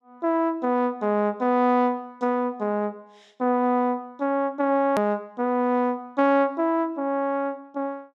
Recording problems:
edit click; at 5 s

